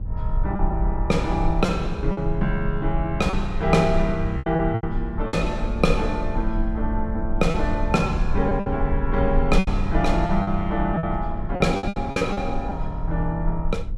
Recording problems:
hum; 50 Hz, harmonics up to 800 Hz, SNR 16 dB
rumble; below 56 Hz, SNR 5 dB
packet loss; 7% of the sound replaced, filled with repeated pitch periods

